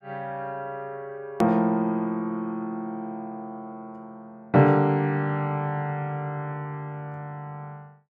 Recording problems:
edit click; at 1.5 s

